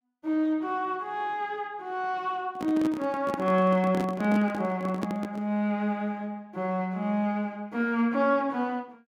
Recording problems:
microphone handling noise; from 2.5 to 5.5 s; peak 0 dB vs average level

